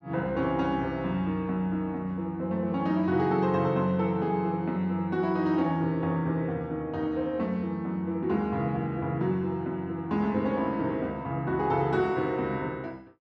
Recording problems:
none

